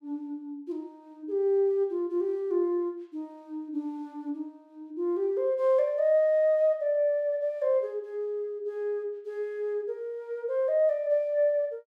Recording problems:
none

